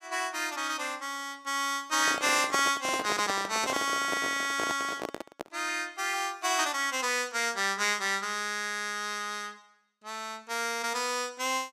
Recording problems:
handling noise; from 2 to 5.5 s; peak 0 dB vs average level

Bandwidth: 15.5 kHz